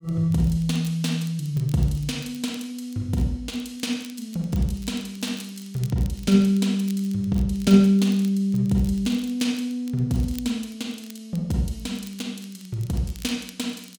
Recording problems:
crackle; vinyl, SNR 23 dB

